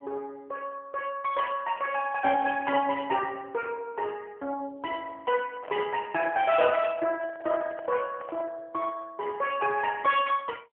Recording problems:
telephone audio; 300 Hz to 3 kHz, AMR-NB
handling noise; from 5.5 to 8.5 s; peak -9 dB vs average level

